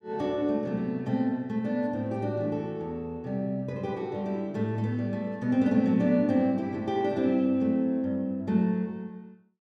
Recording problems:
none

